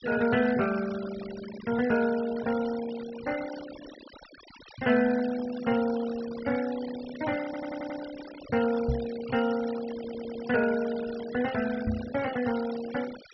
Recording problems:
treble missing; nothing above 5.7 kHz
denoising artefacts; signal-to-artefact ratio 14 dB
audio stuttering; at 7.5 s and at 10 s
microphone bump; at 9 s and at 12 s; peak +3 dB vs average level

